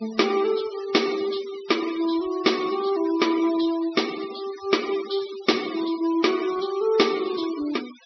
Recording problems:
treble cut off; nothing above 5.9 kHz
noise reduction artefacts; signal-to-artefact ratio 14 dB

